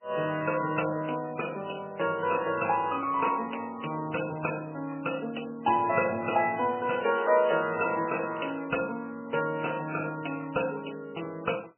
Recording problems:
lossy codec; MP3, log-spectral distance 7 dB, nothing above 2.7 kHz

